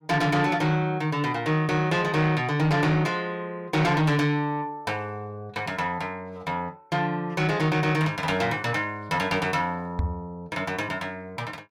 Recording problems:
distorted audio; soft clipping, signal-to-distortion ratio 11 dB
microphone bump; at 10 s; peak +3 dB vs average level

